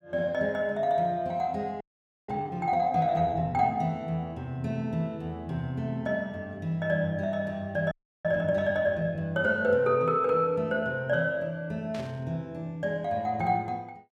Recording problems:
frozen audio; at 2 s and at 8 s
burst of static; at 12 s; peak -11 dB vs average level

